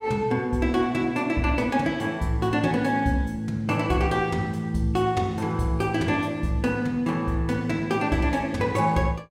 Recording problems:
none

